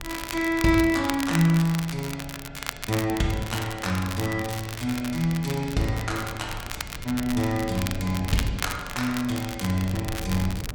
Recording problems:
wind noise; below 160 Hz, SNR 16 dB
crackle; vinyl, SNR 10 dB

